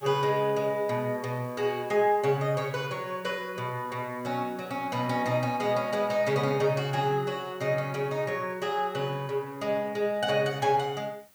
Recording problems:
background hiss; slope -1 dB per octave, SNR 26 dB

